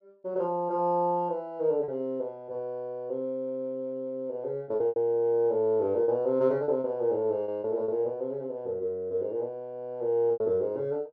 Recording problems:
lost packets; 5% of the sound replaced, filled with repeated pitch periods

